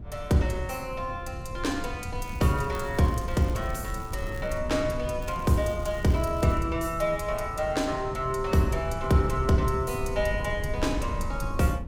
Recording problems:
wind on the microphone; below 110 Hz, SNR 9 dB
crackling; from 2 to 4.5 s and from 5 to 6.5 s; loose cable, SNR 24 dB

